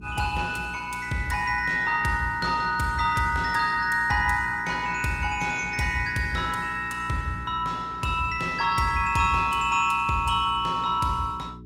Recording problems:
lossy codec; Opus, log-spectral distance 3 dB, nothing above 19.5 kHz
electrical hum; 60 Hz, harmonics up to 420 Hz, SNR 19 dB

